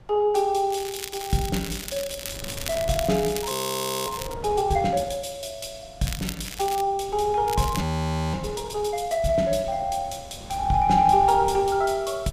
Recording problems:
wind noise; below 350 Hz, SNR 18 dB
crackle; from 0.5 to 4.5 s, at 6 s and at 7.5 s; loose cable, SNR 10 dB
frozen audio; at 3.5 s for 0.5 s and at 8 s for 0.5 s

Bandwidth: 15 kHz